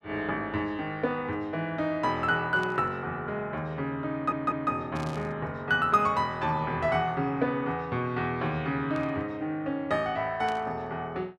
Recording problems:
static burst; 4 times, first at 2.5 s; peak -12 dB vs average level
stutter; at 4 s

